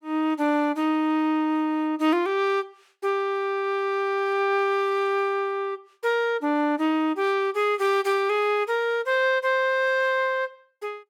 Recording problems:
none

